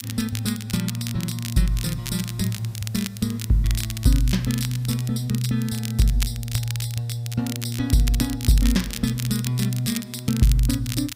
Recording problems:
hiss; slope 0 dB per octave, SNR 30 dB
crackling; vinyl, SNR 10 dB

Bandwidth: 15.5 kHz